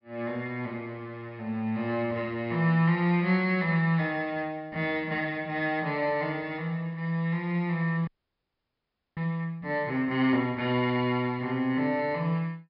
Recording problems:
low-pass filter; nothing above 5.5 kHz
frozen audio; at 8 s for 1 s

